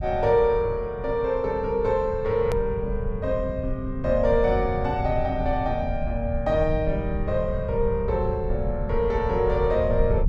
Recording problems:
rumble; below 100 Hz, SNR 7 dB
click at an edit; at 2.5 s

